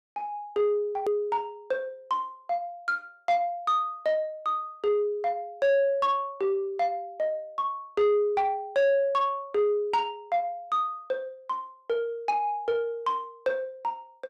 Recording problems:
distortion; soft clipping, signal-to-distortion ratio 11 dB
hard cut with a click; at 1 s

